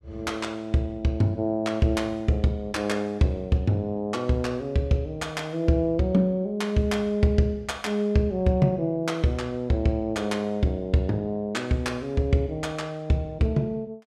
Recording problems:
none

